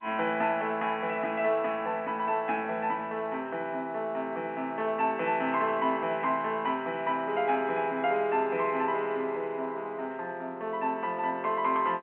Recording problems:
phone line; 240 Hz to 3.3 kHz, G.711

